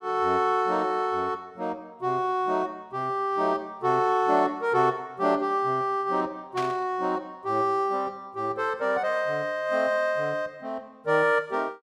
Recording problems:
static burst; at 6.5 s; peak -6 dB vs average level

